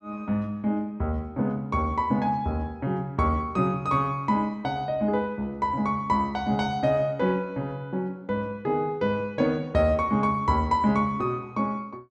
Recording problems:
none

